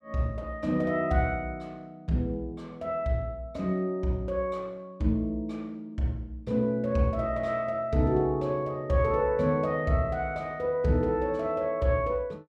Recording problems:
none

